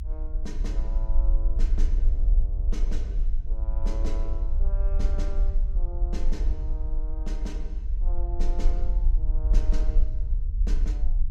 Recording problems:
low-frequency rumble; below 44 Hz, SNR -14 dB

